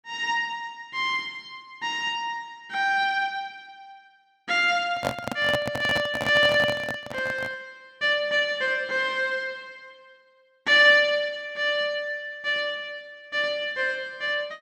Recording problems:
microphone handling noise; from 5 to 7.5 s; peak +1 dB vs average level

